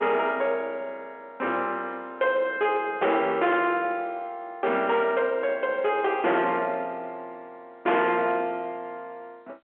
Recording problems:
phone line; 370 Hz to 3.5 kHz, G.711
distorted audio; hard clipping, signal-to-distortion ratio 10 dB

